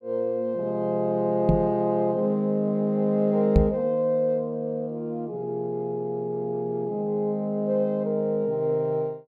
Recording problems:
microphone bump; at 1.5 s and at 3.5 s; peak +8 dB vs average level

